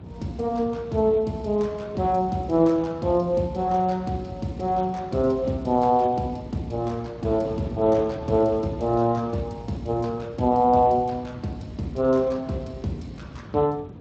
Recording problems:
lossy compression; Speex, log-spectral distance 3 dB
wind noise; below 290 Hz, SNR 17 dB

